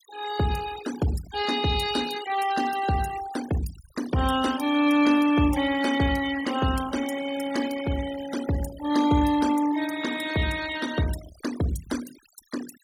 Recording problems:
denoising artefacts; signal-to-artefact ratio 13 dB

